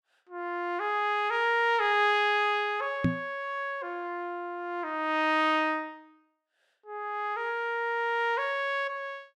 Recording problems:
knock on the microphone; at 3 s; peak +6 dB vs average level

